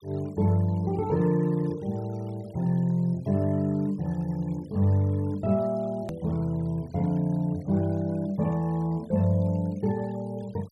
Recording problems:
denoising artefacts; signal-to-artefact ratio 27 dB
hard cut with a click; at 6 s

